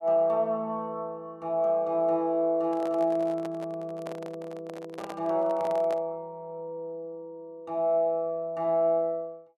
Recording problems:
handling noise; from 2.5 to 6 s; peak -7 dB vs average level

